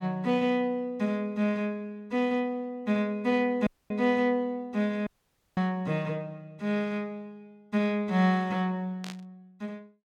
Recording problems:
audio cutting out; at 3.5 s and at 5 s for 0.5 s
burst of static; at 9 s; peak -9 dB vs average level

